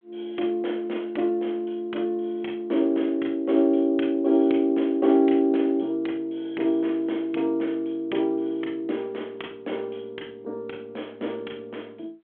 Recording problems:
phone line; 240 Hz to 3.4 kHz, G.726

